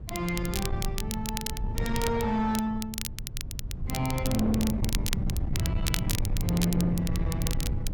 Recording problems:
distorted audio; soft clipping, signal-to-distortion ratio 11 dB
low-frequency rumble; below 140 Hz, SNR 3 dB
crackling; vinyl, SNR 7 dB

